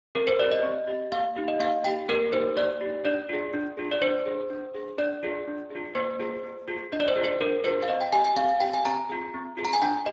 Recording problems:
codec artefacts; Speex, log-spectral distance 4 dB

